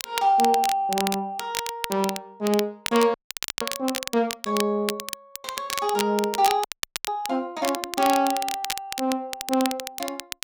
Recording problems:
crackle; vinyl, SNR 7 dB
audio freezing; at 3 s and at 6.5 s

